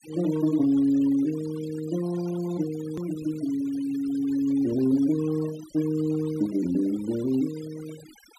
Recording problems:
noise reduction artefacts; signal-to-artefact ratio 19 dB
edit click; at 3 s

